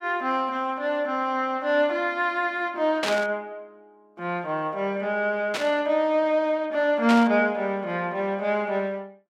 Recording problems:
burst of static; at 3 s, at 5.5 s and at 7 s; peak +1 dB vs average level

